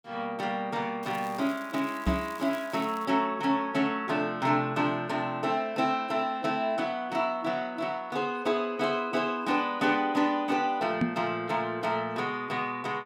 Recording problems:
crackle; from 1 to 3 s; loose cable, SNR 22 dB
microphone bump; at 2 s and at 11 s; peak +5 dB vs average level

